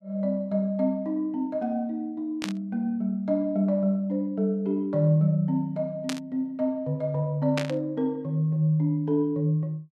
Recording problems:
static burst; at 2.5 s, at 6 s and at 7.5 s; peak 0 dB vs average level

